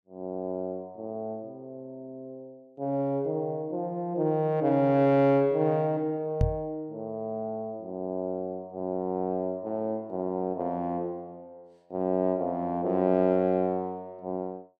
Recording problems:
knock on the microphone; at 6.5 s; peak +6 dB vs average level

